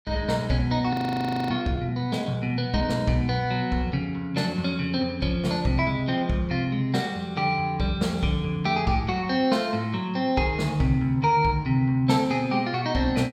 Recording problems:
frozen audio; at 1 s for 0.5 s

